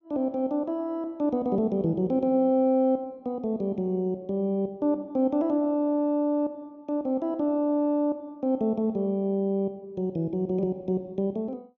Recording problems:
none

